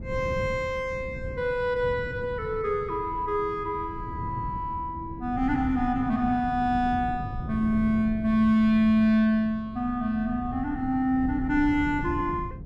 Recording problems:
wind noise; below 180 Hz, SNR 11 dB

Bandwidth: 14.5 kHz